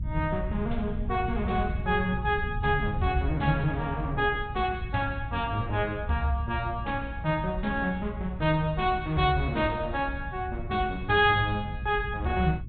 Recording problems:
treble missing; nothing above 4 kHz
low-frequency rumble; below 110 Hz, SNR 8 dB

